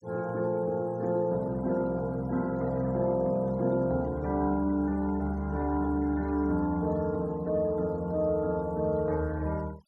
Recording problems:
noise reduction artefacts; signal-to-artefact ratio 27 dB

